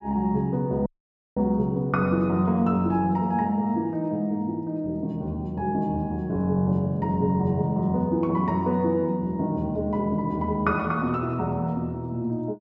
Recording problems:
audio cutting out; at 1 s for 0.5 s

